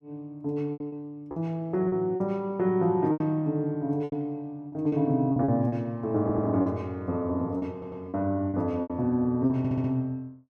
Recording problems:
lost packets; 9% of the sound replaced, filled with repeated pitch periods
audio stuttering; at 6 s, at 7.5 s and at 9.5 s

